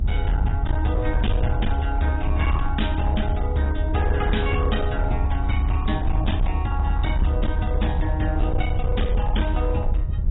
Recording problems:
codec artefacts; AAC, log-spectral distance 2 dB, nothing above 3.8 kHz
distorted audio; hard clipping, signal-to-distortion ratio 11 dB
rumble; below 74 Hz, SNR -2 dB
wind on the microphone; below 130 Hz, SNR 13 dB

